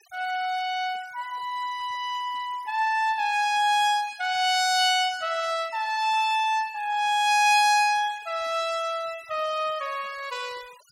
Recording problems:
denoising artefacts; signal-to-artefact ratio 24 dB

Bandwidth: 16 kHz